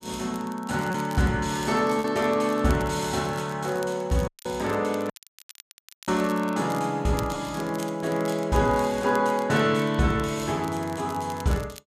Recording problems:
crackling; vinyl, SNR 21 dB
lost packets; 0.8% of the sound replaced, filled with repeated pitch periods
audio cutting out; at 4.5 s and at 5 s for 1 s

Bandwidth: 14.5 kHz